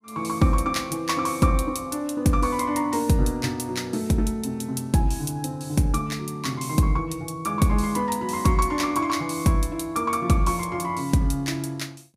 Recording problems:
none

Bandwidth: 15.5 kHz